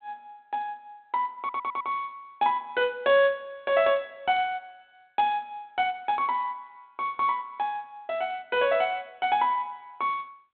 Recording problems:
telephone audio; 170 Hz to 3.7 kHz, G.726
stutter; at 1.5 s

